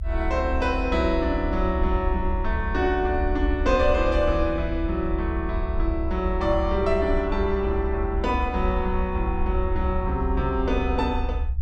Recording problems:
rumble; below 66 Hz, SNR 4 dB

